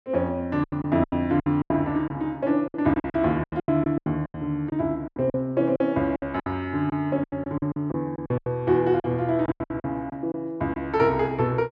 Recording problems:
lost packets; 15% of the sound replaced, filled with silence

